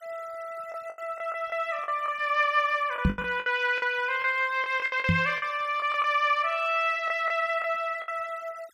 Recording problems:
denoising artefacts; signal-to-artefact ratio 25 dB
lost packets; 9% of the sound replaced, filled with the last packet
knock on the microphone; at 3 s and at 5 s; peak +6 dB vs average level

